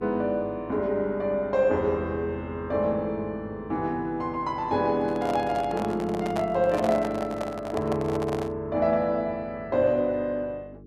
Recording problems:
hum; 50 Hz, harmonics up to 450 Hz, SNR 19 dB
handling noise; from 5 to 8.5 s; peak -1 dB vs average level

